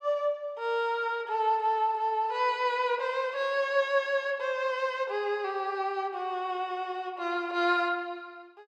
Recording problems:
none

